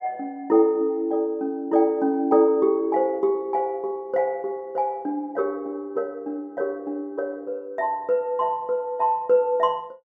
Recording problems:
none

